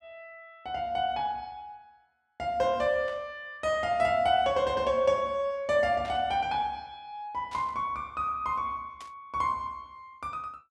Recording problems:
burst of static; 4 times, first at 3 s; peak -13 dB vs average level

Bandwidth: 12 kHz